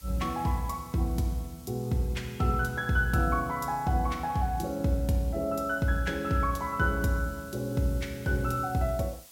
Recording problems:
background hiss; SNR 22 dB

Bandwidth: 16.5 kHz